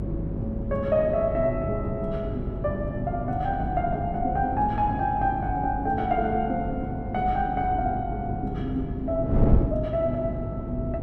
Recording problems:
hum; 50 Hz, harmonics up to 400 Hz, SNR 9 dB
wind on the microphone; below 240 Hz, SNR 5 dB

